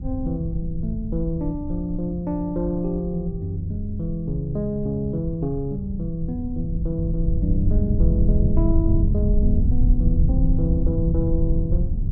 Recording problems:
low-frequency rumble; below 90 Hz, SNR -1 dB

